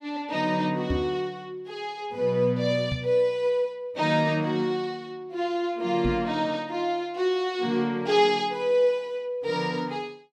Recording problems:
microphone thump; at 1 s, at 3 s and at 6 s; peak +2 dB vs average level

